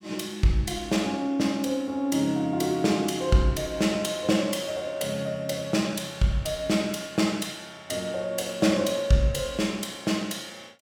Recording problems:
none

